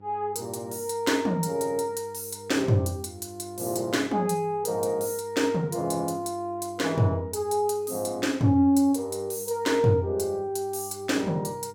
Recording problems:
hum; 50 Hz, harmonics up to 1 kHz, SNR 23 dB

